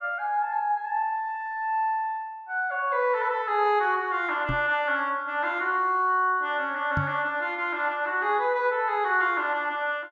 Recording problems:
knock on the microphone; at 4.5 s and at 7 s; peak 0 dB vs average level

